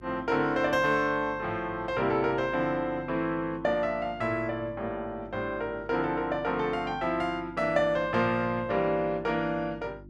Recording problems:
hum; 50 Hz, harmonics up to 350 Hz, SNR 20 dB

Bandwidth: 12.5 kHz